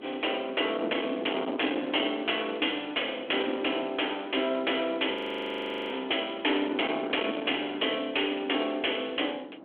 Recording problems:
phone line; 240 Hz to 3.4 kHz, G.726
distortion; soft clipping, signal-to-distortion ratio 12 dB
wind noise; below 640 Hz, SNR 10 dB
audio freezing; at 5 s for 1 s

